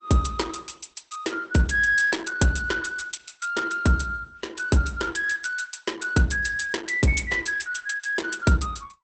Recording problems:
lossy compression; Opus, log-spectral distance 5 dB, nothing above 8.2 kHz

